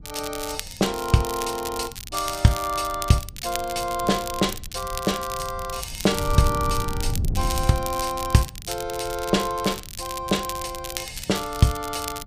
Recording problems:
wind on the microphone; below 110 Hz, SNR 11 dB
crackle; vinyl, SNR 10 dB

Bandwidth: 15 kHz